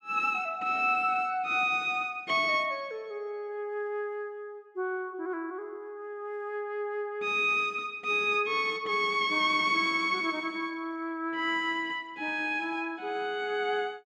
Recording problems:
none

